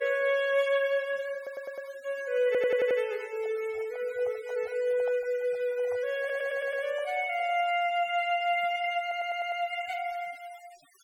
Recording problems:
denoising artefacts; signal-to-artefact ratio 21 dB
audio stuttering; 4 times, first at 1.5 s
microphone handling noise; from 3.5 to 7.5 s; peak -10 dB vs average level

